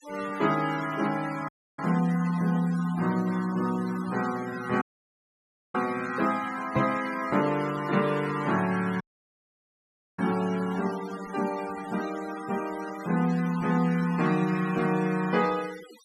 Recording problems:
noise reduction artefacts; signal-to-artefact ratio 15 dB
dropout; at 1.5 s, at 5 s for 1 s and at 9 s for 1 s
microphone thump; at 7 s; peak +1 dB vs average level

